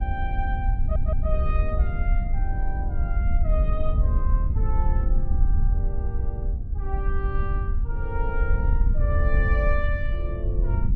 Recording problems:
wind on the microphone; below 66 Hz, SNR -9 dB
audio stuttering; at 1 s

